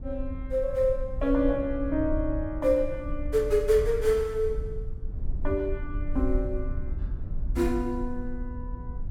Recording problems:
rumble; below 64 Hz, SNR 7 dB

